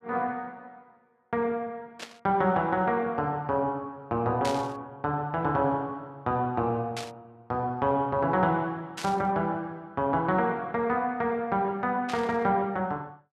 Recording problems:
burst of static; 5 times, first at 2 s; peak -3 dB vs average level

